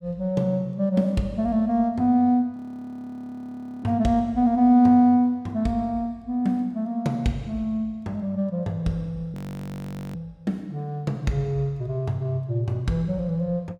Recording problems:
audio freezing; at 2.5 s for 1.5 s and at 9.5 s for 1 s

